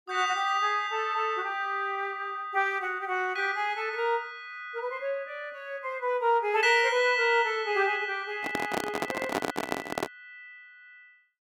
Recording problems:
handling noise; from 8.5 to 10 s; peak +2 dB vs average level

